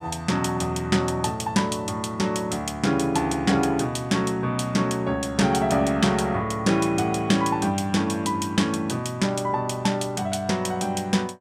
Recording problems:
none

